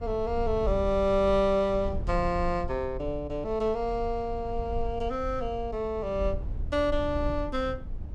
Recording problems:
rumble; below 72 Hz, SNR 9 dB

